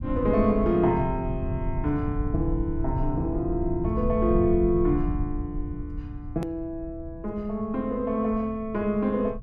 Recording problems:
rumble; below 110 Hz, SNR 7 dB
hard cut with a click; at 6.5 s

